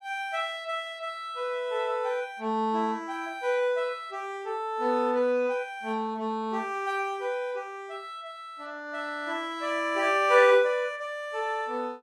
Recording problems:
none

